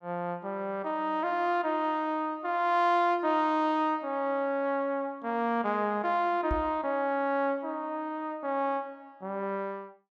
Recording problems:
microphone thump; at 6.5 s; peak -1 dB vs average level

